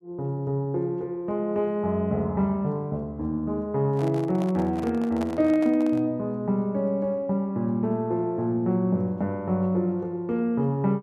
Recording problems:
handling noise; from 4 to 6 s; peak -6 dB vs average level

